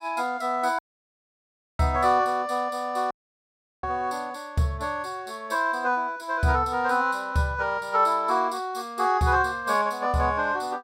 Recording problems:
dropout; at 1 s for 1 s and at 3 s for 0.5 s

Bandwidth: 16 kHz